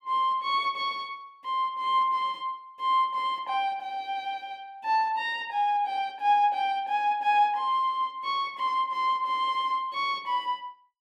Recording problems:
none

